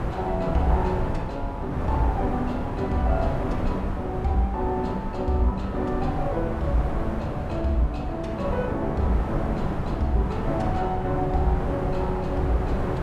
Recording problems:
wind on the microphone; below 440 Hz, SNR 3 dB

